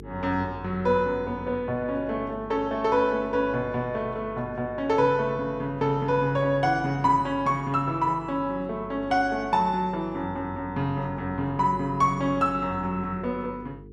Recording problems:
electrical hum; 50 Hz, harmonics up to 450 Hz, SNR 17 dB

